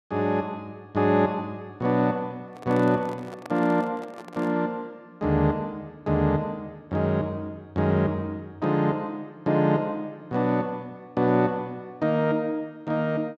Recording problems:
handling noise; from 2.5 to 4.5 s; peak -9 dB vs average level

